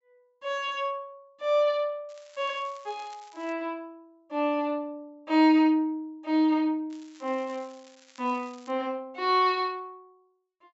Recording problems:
low-pass filter; nothing above 7.7 kHz
crackle; from 2 to 3.5 s and from 7 to 8.5 s; loose cable, SNR 27 dB

